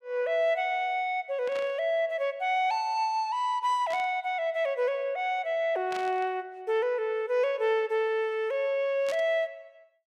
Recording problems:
burst of static; 4 times, first at 1.5 s; peak -8 dB vs average level

